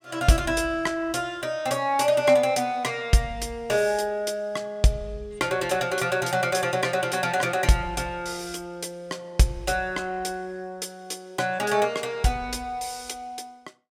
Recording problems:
none

